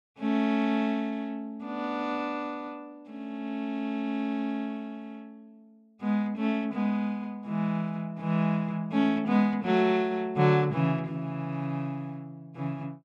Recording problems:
none

